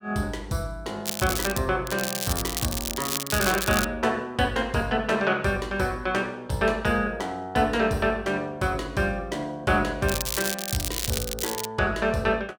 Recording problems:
crackle; at 1 s, from 2 to 4 s and from 10 to 12 s; loose cable, SNR 3 dB

